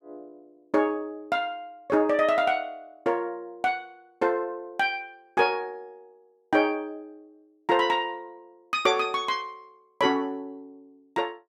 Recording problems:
none

